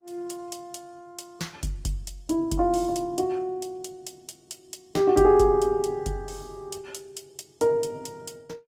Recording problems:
codec artefacts; Opus, log-spectral distance 3 dB

